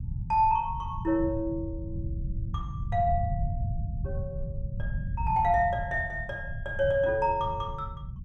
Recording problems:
low-frequency rumble; below 130 Hz, SNR 7 dB

